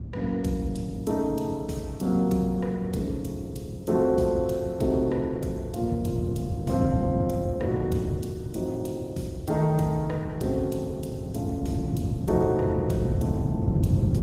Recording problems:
lossy compression; Opus, log-spectral distance 2 dB, nothing above 16 kHz
wind noise; below 180 Hz, SNR 3 dB

